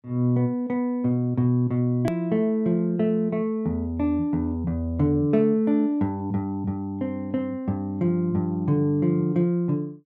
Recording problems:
hard cut with a click; at 2 s

